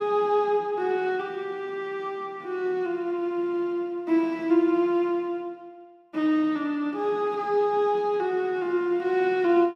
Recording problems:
none

